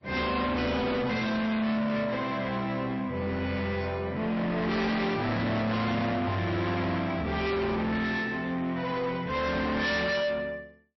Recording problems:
lossy codec; MP3, log-spectral distance 2 dB, nothing above 5.7 kHz
distorted audio; soft clipping, signal-to-distortion ratio 6 dB

